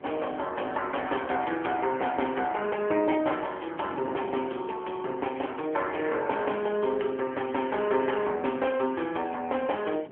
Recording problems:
phone line; 280 Hz to 3.1 kHz, AMR-NB
wind on the microphone; below 620 Hz, SNR 17 dB

